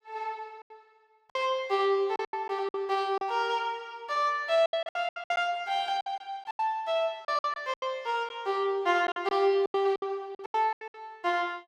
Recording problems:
packet loss; 13% of the sound replaced, filled with silence

